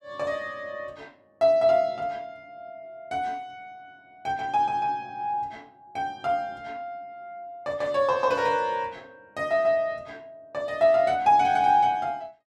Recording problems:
none

